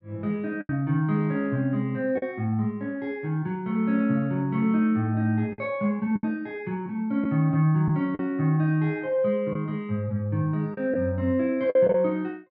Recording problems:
lost packets; 4% of the sound replaced, filled with the last packet

